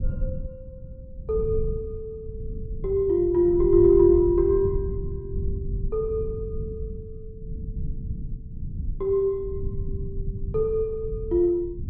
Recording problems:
rumble; below 110 Hz, SNR 11 dB

